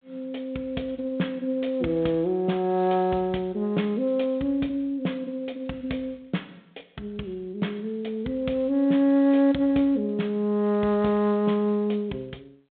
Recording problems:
telephone audio; 130 Hz to 3.6 kHz, G.726

